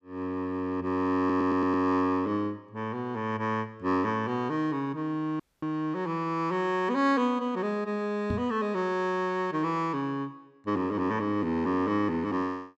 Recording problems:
audio stuttering; at 1 s
audio cutting out; at 5.5 s
microphone bump; at 8.5 s; peak +1 dB vs average level

